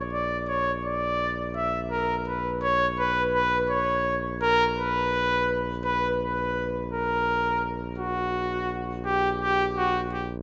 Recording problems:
treble cut off; nothing above 8 kHz
electrical hum; 60 Hz, harmonics up to 1.1 kHz, SNR 8 dB

